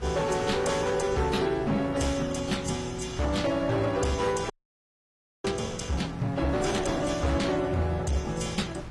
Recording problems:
lossy compression; AAC, then AAC, log-spectral distance 4 dB
distorted audio; hard clipping, signal-to-distortion ratio 11 dB
hum; 60 Hz, harmonics up to 420 Hz, SNR 18 dB
wind on the microphone; below 860 Hz, SNR 16 dB
frozen audio; at 4.5 s for 1 s

